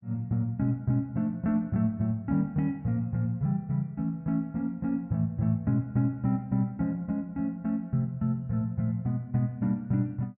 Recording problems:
none

